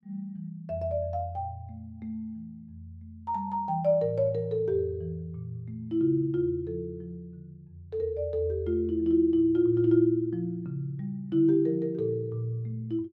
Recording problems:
none

